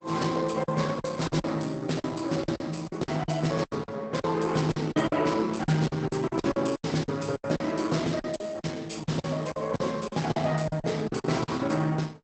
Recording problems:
lossy codec; Opus, log-spectral distance 5 dB, nothing above 8 kHz
lost packets; 14% of the sound replaced, filled with silence

